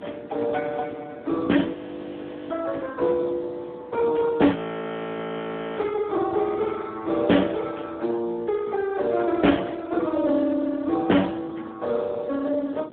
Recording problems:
telephone audio; 220 Hz to 3.6 kHz, Speex
wind on the microphone; below 450 Hz, SNR 20 dB
audio freezing; at 1.5 s for 1 s and at 4.5 s for 1 s

